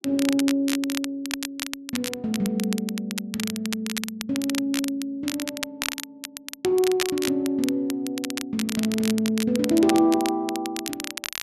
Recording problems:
crackle; vinyl, SNR 7 dB

